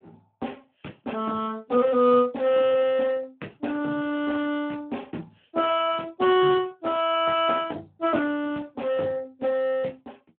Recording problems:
telephone audio; 190 Hz to 3.4 kHz, Speex

